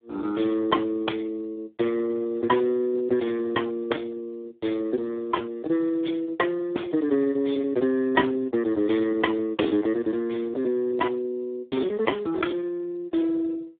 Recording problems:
phone line; 240 Hz to 3.5 kHz, Speex
lost packets; 11% of the sound replaced, filled with repeated pitch periods

